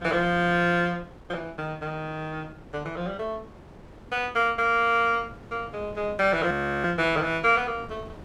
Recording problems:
wind on the microphone; below 530 Hz, SNR 20 dB
frozen audio; at 6.5 s

